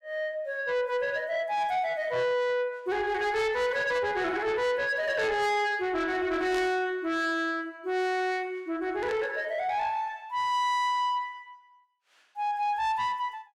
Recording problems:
distorted audio; soft clipping, signal-to-distortion ratio 10 dB
static burst; at 6.5 s and at 9 s; peak -9 dB vs average level

